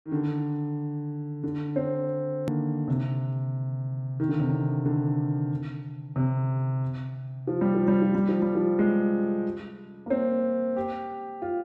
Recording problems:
click at an edit; at 2.5 s

